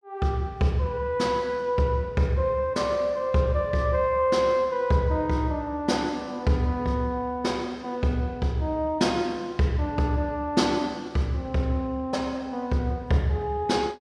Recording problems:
none

